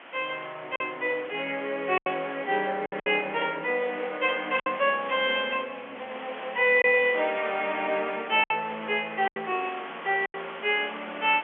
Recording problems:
phone line; 280 Hz to 3.3 kHz, G.711
background hiss; SNR 15 dB
lost packets; 5% of the sound replaced, filled with silence

